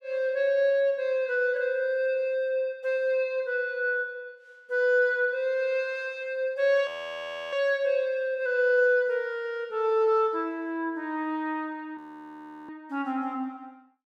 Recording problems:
audio freezing; at 7 s for 0.5 s and at 12 s for 0.5 s

